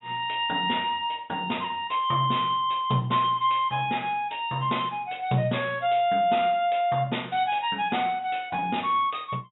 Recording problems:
low-pass filter; nothing above 3.8 kHz

